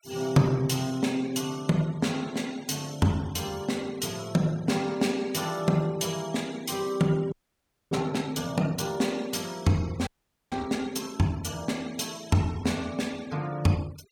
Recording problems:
denoising artefacts; signal-to-artefact ratio 22 dB
audio freezing; at 7.5 s for 0.5 s and at 10 s

